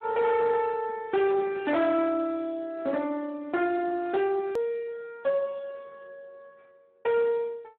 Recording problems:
phone line; 220 Hz to 3.4 kHz, Speex
distorted audio; hard clipping, signal-to-distortion ratio 12 dB
hard cut with a click; at 4.5 s

